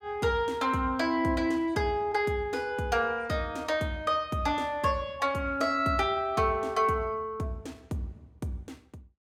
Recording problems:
none

